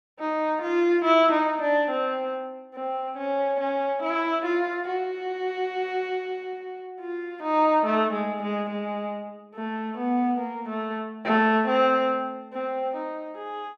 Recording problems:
none

